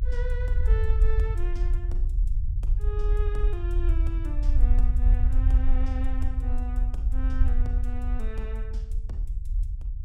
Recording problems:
low-frequency rumble; below 56 Hz, SNR -12 dB

